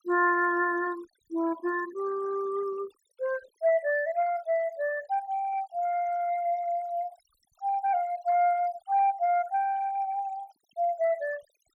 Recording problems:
denoising artefacts; signal-to-artefact ratio 22 dB

